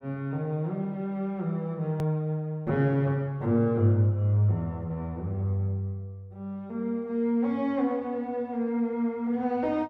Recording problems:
hard cut with a click; at 2 s

